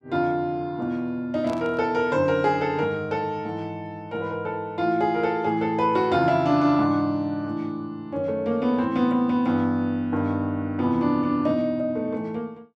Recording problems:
static burst; at 1.5 s; peak -15 dB vs average level

